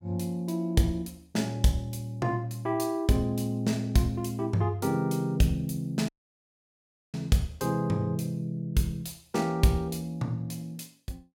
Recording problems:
audio cutting out; at 6 s for 1 s

